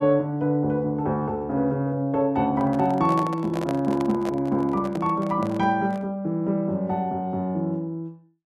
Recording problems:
handling noise; from 2.5 to 6 s; peak -3 dB vs average level

